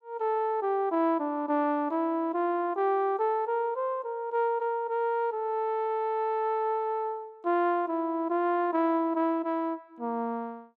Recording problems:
none

